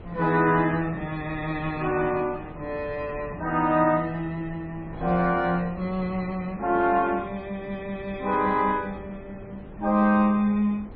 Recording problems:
lossy codec; MP3, log-spectral distance 2 dB
wind on the microphone; below 410 Hz, SNR 17 dB

